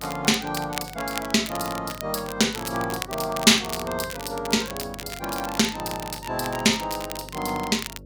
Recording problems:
electrical hum; 50 Hz, harmonics up to 600 Hz, SNR 20 dB
crackling; vinyl, SNR 11 dB

